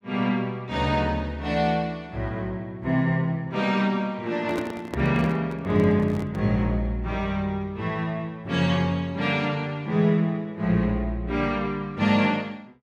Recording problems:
microphone handling noise; from 4.5 to 6.5 s; peak -1 dB vs average level

